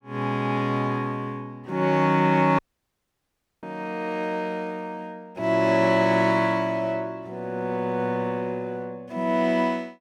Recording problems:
audio cutting out; at 2.5 s for 1 s

